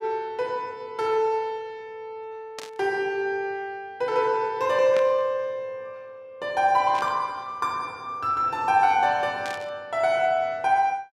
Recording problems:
static burst; 4 times, first at 2.5 s; peak -6 dB vs average level

